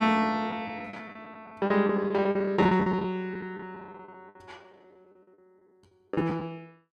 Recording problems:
packet loss; 15% of the sound replaced, filled with the last packet

